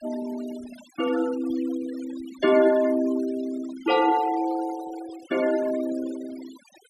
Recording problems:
noise reduction artefacts; signal-to-artefact ratio 17 dB

